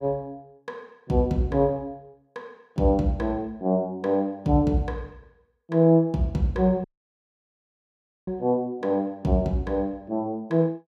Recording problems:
audio cutting out; at 7 s for 1.5 s

